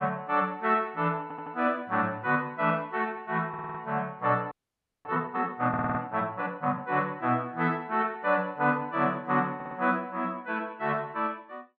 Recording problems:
audio stuttering; 4 times, first at 1 s
frozen audio; at 4.5 s for 0.5 s

